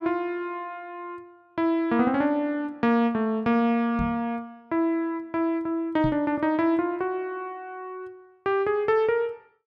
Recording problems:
microphone thump; at 4 s and at 6 s; peak 0 dB vs average level

